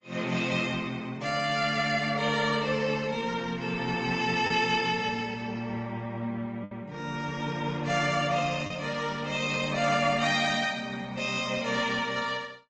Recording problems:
treble missing; nothing above 7.6 kHz
lossy codec; Opus, log-spectral distance 4 dB
packet loss; 1% of the sound replaced, filled with the last packet

